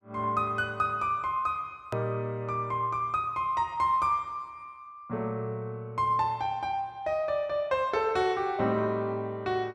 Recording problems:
click at an edit; at 2 s

